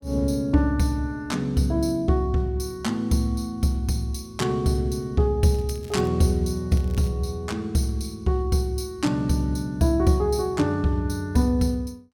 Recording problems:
crackle; at 5.5 s and at 6.5 s; loose cable, SNR 27 dB

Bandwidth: 17 kHz